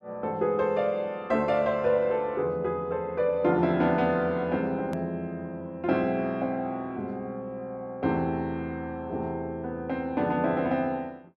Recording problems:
edit click; at 5 s

